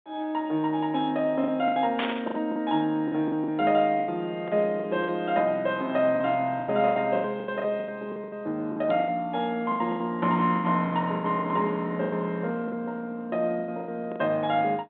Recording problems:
telephone audio; 150 Hz to 3.7 kHz, G.726
lost packets; 14% of the sound replaced, filled with the last packet
static burst; at 2 s; peak 0 dB vs average level

